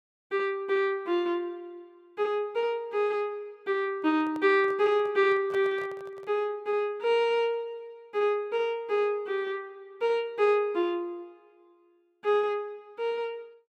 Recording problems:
microphone handling noise; from 4 to 6.5 s; peak -11 dB vs average level

